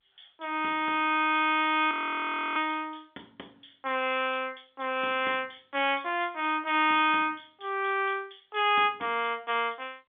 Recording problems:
telephone audio; 220 Hz to 3.5 kHz, G.711
audio freezing; at 2 s for 0.5 s

